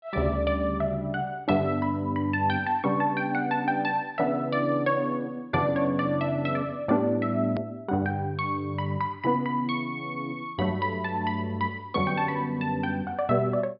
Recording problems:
treble cut off; nothing above 5.5 kHz
hard cut with a click; at 7.5 s

